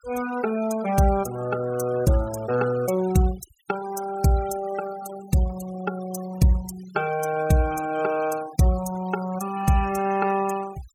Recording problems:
denoising artefacts; signal-to-artefact ratio 16 dB

